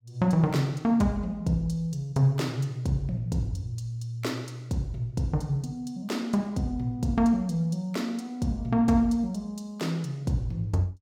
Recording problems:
none

